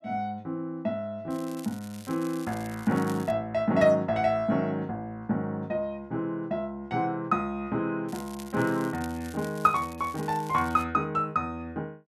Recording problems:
crackling; from 1.5 to 3.5 s and from 8 to 11 s; loose cable, SNR 19 dB

